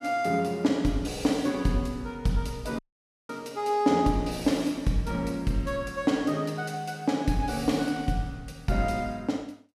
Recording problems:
audio cutting out; at 3 s for 0.5 s

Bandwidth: 14.5 kHz